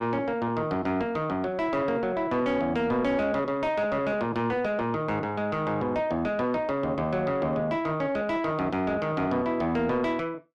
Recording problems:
distortion; soft clipping, signal-to-distortion ratio 11 dB

